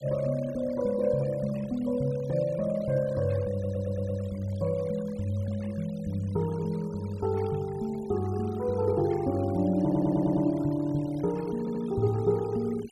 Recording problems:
noise reduction artefacts; signal-to-artefact ratio 22 dB
stutter; at 3.5 s, at 10 s and at 12 s

